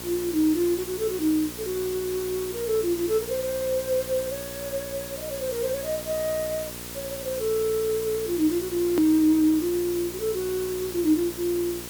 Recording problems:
electrical hum; 60 Hz, harmonics up to 1.6 kHz, SNR 16 dB
background hiss; slope 0 dB per octave, SNR 10 dB
edit click; at 9 s

